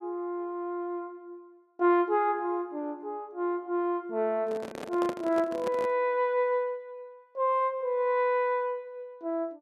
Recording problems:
microphone handling noise; from 4.5 to 6 s; peak -3 dB vs average level

